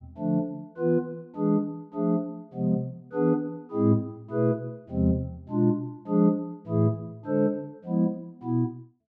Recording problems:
none

